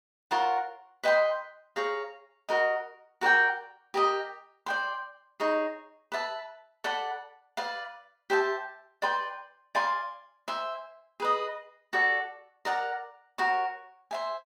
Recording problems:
none

